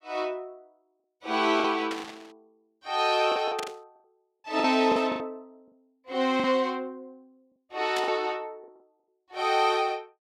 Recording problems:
lost packets; 8% of the sound replaced, filled with the last packet
static burst; 4 times, first at 2 s; peak -4 dB vs average level

